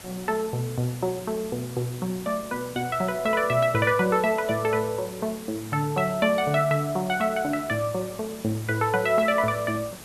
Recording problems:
background hiss; slope -3 dB per octave, SNR 16 dB

